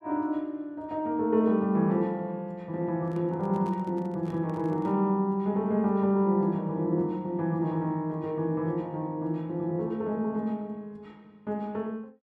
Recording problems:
microphone handling noise; from 3 to 5 s; peak -13 dB vs average level

